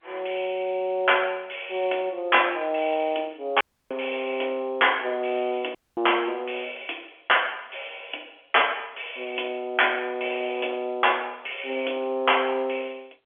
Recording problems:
telephone audio; 260 Hz to 3.4 kHz, G.711
dropout; at 3.5 s and at 6 s

